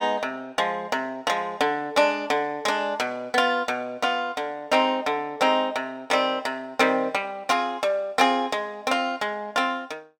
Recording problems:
none

